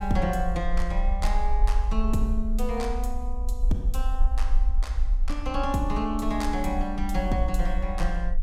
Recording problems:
low-frequency rumble; below 48 Hz, SNR 0 dB

